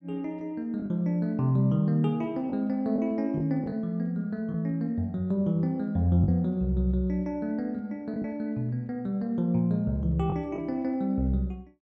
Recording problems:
packet loss; 3% of the sound replaced, filled with the last packet

